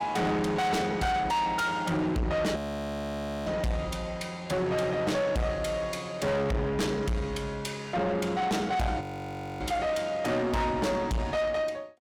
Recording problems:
distorted audio; soft clipping, signal-to-distortion ratio 6 dB
frozen audio; at 2.5 s for 1 s and at 9 s for 0.5 s

